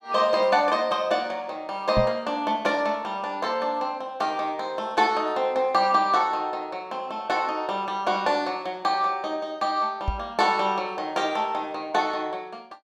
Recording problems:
microphone bump; at 2 s and at 10 s; peak +2 dB vs average level

